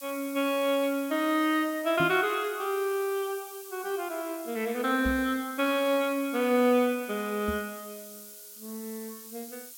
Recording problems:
background hiss; SNR 16 dB
microphone bump; at 2 s, at 5 s and at 7.5 s; peak -1 dB vs average level

